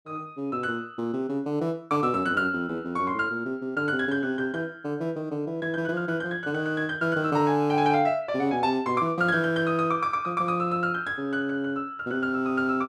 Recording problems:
none

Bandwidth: 13.5 kHz